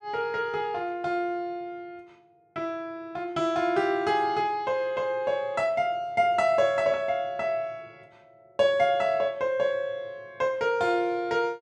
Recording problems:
none

